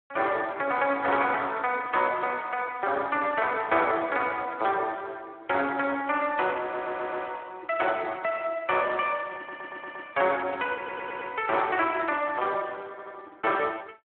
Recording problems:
phone line; 260 Hz to 3.3 kHz, Speex
audio stuttering; 4 times, first at 6.5 s

